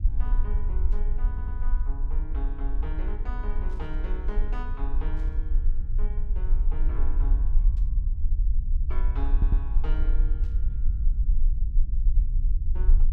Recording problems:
low-frequency rumble; below 44 Hz, strongest tone 20 Hz, SNR -14 dB
burst of static; 5 times, first at 1 s; peak -13 dB vs average level
stutter; at 1.5 s and at 9.5 s

